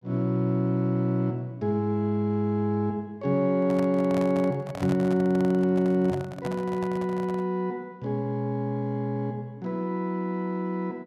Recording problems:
microphone handling noise; from 3.5 to 7.5 s; peak -5 dB vs average level

